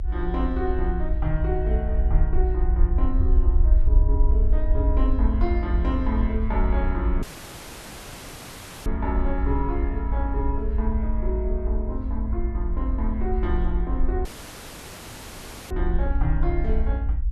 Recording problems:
low-frequency rumble; below 58 Hz, SNR -5 dB
audio cutting out; at 7 s for 1.5 s and at 14 s for 1.5 s

